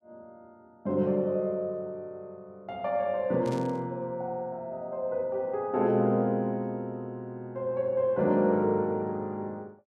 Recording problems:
static burst; at 3.5 s; peak -13 dB vs average level

